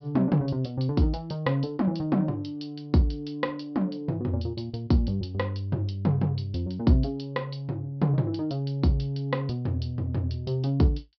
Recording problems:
treble missing; nothing above 5.5 kHz

